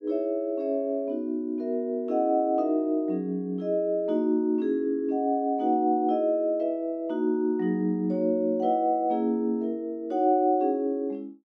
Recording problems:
none

